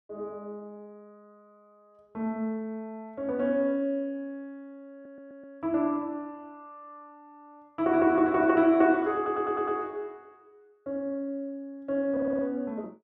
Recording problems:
stutter; at 5 s, at 9 s and at 12 s

